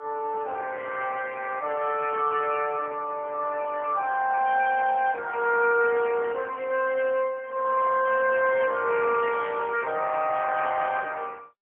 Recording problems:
phone line; 320 Hz to 3.1 kHz, AMR-NB, then MP3

